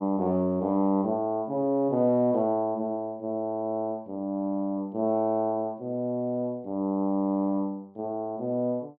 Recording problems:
none

